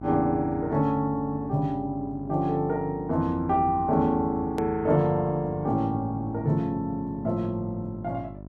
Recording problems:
hum; 50 Hz, harmonics up to 1.1 kHz, SNR 15 dB
edit click; at 4.5 s

